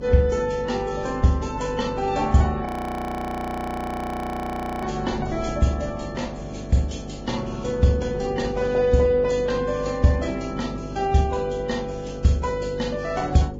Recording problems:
codec artefacts; Vorbis, log-spectral distance 3 dB, nothing above 17.7 kHz
hum; 50 Hz, harmonics up to 550 Hz, SNR 11 dB
wind on the microphone; below 330 Hz, SNR 18 dB
frozen audio; at 2.5 s for 2 s

